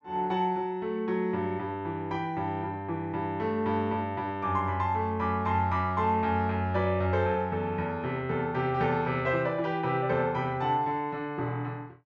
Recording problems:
none

